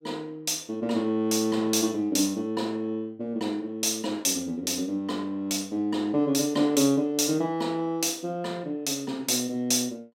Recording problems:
none

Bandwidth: 16 kHz